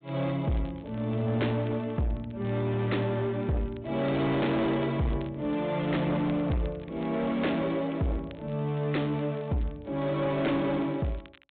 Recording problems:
low-pass filter; nothing above 4 kHz
distortion; soft clipping, signal-to-distortion ratio 10 dB
crackle; vinyl, SNR 27 dB

